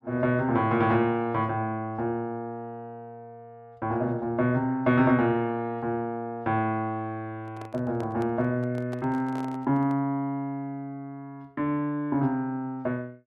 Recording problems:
microphone handling noise; from 7.5 to 10 s; peak -10 dB vs average level

